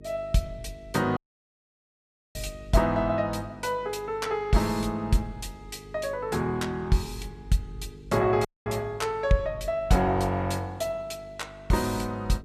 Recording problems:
hum; 50 Hz, harmonics up to 450 Hz, SNR 20 dB
dropout; at 1 s for 1 s and at 8.5 s

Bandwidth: 14.5 kHz